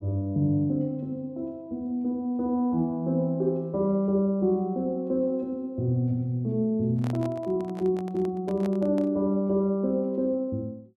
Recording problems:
handling noise; from 7 to 9 s; peak -8 dB vs average level

